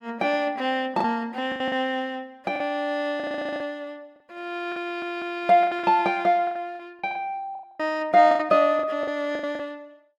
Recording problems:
lost packets; 12% of the sound replaced, filled with the last packet
audio stuttering; at 3 s and at 5 s

